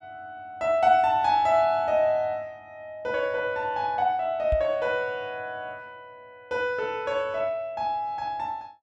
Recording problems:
microphone thump; at 4.5 s; peak 0 dB vs average level

